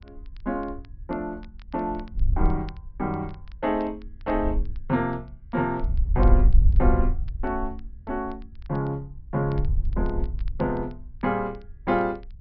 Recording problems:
treble cut off; nothing above 5.5 kHz
wind on the microphone; below 60 Hz, SNR -2 dB
crackling; vinyl, SNR 30 dB

